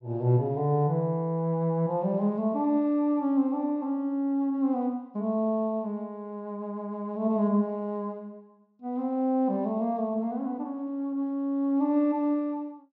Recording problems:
low-pass filter; nothing above 8 kHz

